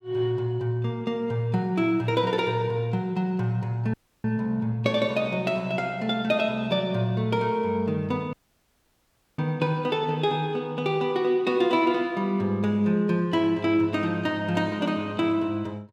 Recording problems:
audio cutting out; at 4 s and at 8.5 s for 1 s

